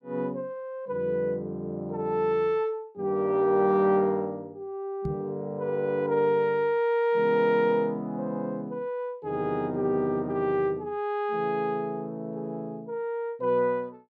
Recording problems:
knock on the microphone; at 5 s; peak -1 dB vs average level

